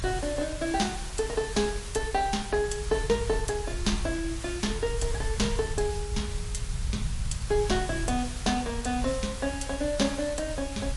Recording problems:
lossy codec; MP3, log-spectral distance 8 dB, nothing above 11 kHz
background hiss; slope 0 dB per octave, SNR 11 dB
rumble; below 88 Hz, SNR 6 dB

